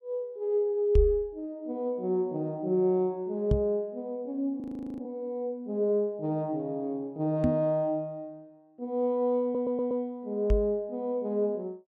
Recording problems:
microphone thump; 4 times, first at 1 s; peak +8 dB vs average level
frozen audio; at 4.5 s
stutter; at 9.5 s

